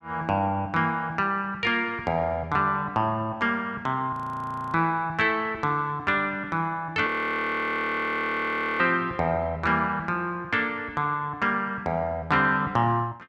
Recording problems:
frozen audio; at 4 s for 0.5 s and at 7 s for 1.5 s

